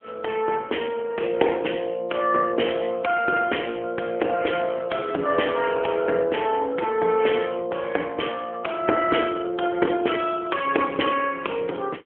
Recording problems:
phone line; 280 Hz to 3.3 kHz, AMR-NB

